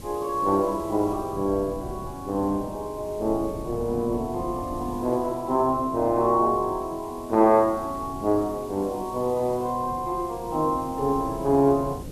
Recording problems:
hiss; slope -1 dB per octave, SNR 24 dB
wind noise; below 290 Hz, SNR 16 dB

